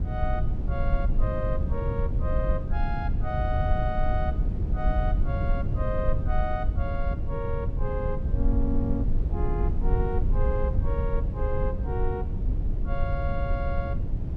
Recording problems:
rumble; below 84 Hz, SNR -5 dB

